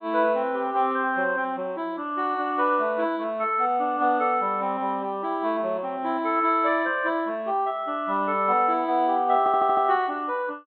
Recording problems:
treble cut off; nothing above 4 kHz
stutter; at 9.5 s

